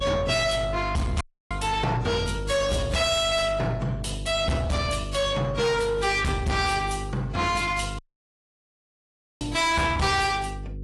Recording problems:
lossy compression; AAC, log-spectral distance 4 dB, nothing above 11.3 kHz
distortion; soft clipping, signal-to-distortion ratio 5 dB
hum; 50 Hz, harmonics up to 500 Hz, SNR 10 dB
dropout; at 1 s and at 8 s for 1.5 s

